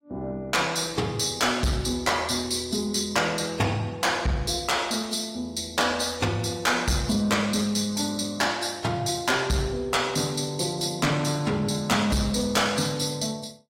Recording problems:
lossy compression; AAC, log-spectral distance 4 dB, nothing above 16.5 kHz
distortion; soft clipping, signal-to-distortion ratio 8 dB

